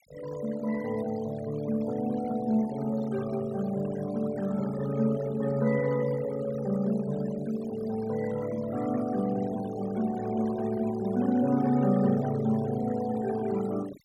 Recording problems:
denoising artefacts; signal-to-artefact ratio 17 dB

